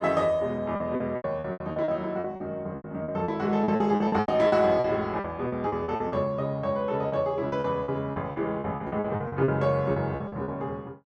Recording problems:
packet loss; 17% of the sound replaced, filled with repeated pitch periods

